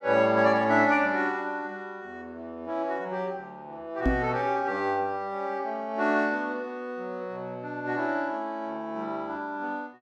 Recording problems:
microphone bump; at 4 s; peak +5 dB vs average level

